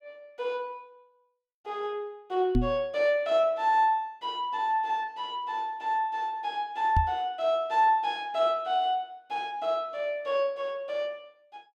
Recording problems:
microphone thump; at 2.5 s and at 7 s; peak +6 dB vs average level

